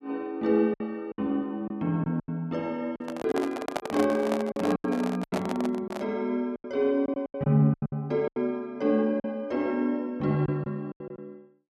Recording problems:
lost packets; 11% of the sound replaced, filled with silence
handling noise; from 3 to 6 s; peak +2 dB vs average level

